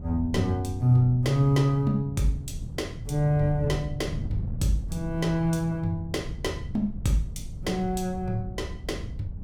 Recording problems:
wind noise; below 130 Hz, SNR 10 dB

